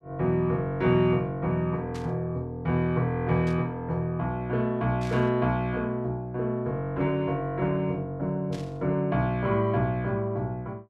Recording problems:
static burst; 4 times, first at 2 s; peak -13 dB vs average level

